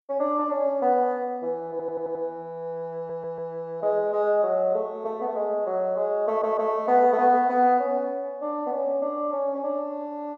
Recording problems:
audio stuttering; at 1.5 s, at 3 s and at 6.5 s

